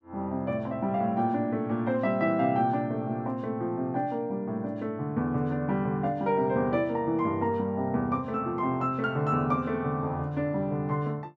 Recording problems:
none

